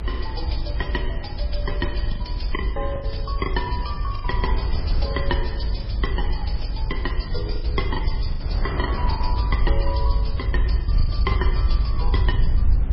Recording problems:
lossy codec; MP3, log-spectral distance 3 dB, nothing above 5.2 kHz
hum; 50 Hz, harmonics up to 550 Hz, SNR 17 dB
low-frequency rumble; below 66 Hz, SNR -5 dB
wind on the microphone; below 680 Hz, SNR 9 dB
packet loss; 9% of the sound replaced, filled with the last packet

